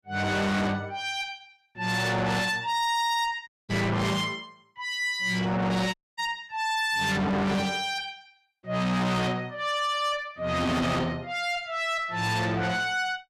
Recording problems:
distorted audio; soft clipping, signal-to-distortion ratio 6 dB
dropout; at 3.5 s and at 6 s

